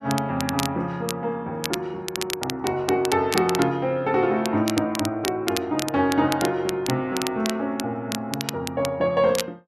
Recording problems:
crackle; vinyl, SNR 8 dB

